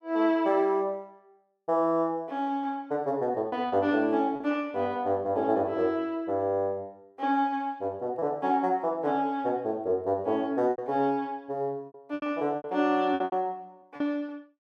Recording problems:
packet loss; 5% of the sound replaced, filled with repeated pitch periods

